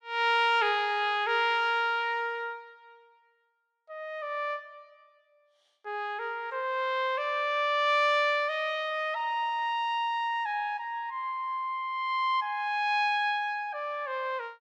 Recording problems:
none

